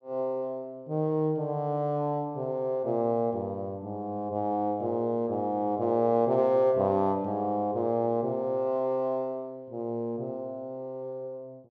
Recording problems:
none

